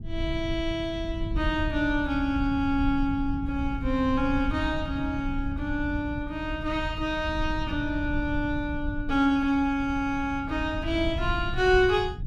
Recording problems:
rumble; below 96 Hz, SNR 8 dB

